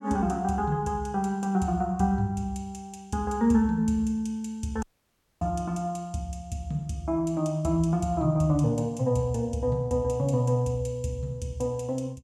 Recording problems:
audio cutting out; at 5 s for 0.5 s

